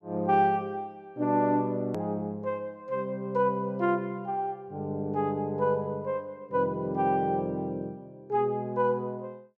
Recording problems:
click at an edit; at 2 s

